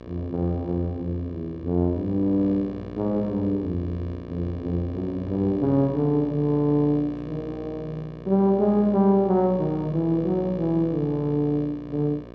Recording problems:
electrical hum; 60 Hz, harmonics up to 2.4 kHz, SNR 14 dB

